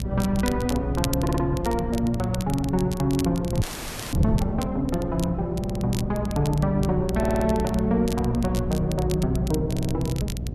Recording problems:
electrical hum; 60 Hz, harmonics up to 720 Hz, SNR 8 dB
wind on the microphone; below 170 Hz, SNR 8 dB
crackle; vinyl, SNR 14 dB
audio stuttering; 4 times, first at 1 s
frozen audio; at 3.5 s for 0.5 s

